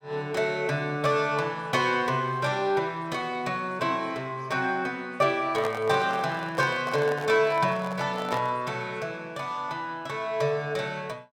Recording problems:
microphone handling noise; from 5.5 to 8.5 s; peak -1 dB vs average level

